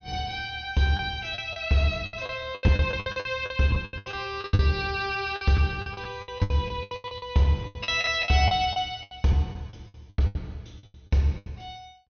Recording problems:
treble cut off; nothing above 6.4 kHz
lost packets; 18% of the sound replaced, filled with the last packet

